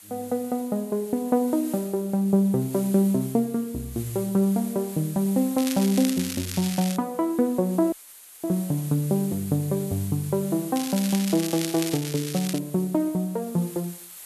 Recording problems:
background hiss; slope +1 dB per octave, SNR 16 dB
crackling; from 5.5 to 7 s and from 11 to 13 s; loose cable, SNR 8 dB
audio cutting out; at 8 s for 0.5 s

